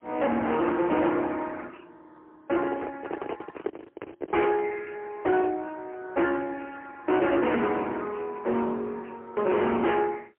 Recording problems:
phone line; 260 Hz to 3.6 kHz, AMR-NB, then MP3
distorted audio; hard clipping, uneven, signal-to-distortion ratio 6 dB
microphone handling noise; from 2.5 to 4.5 s; peak 0 dB vs average level

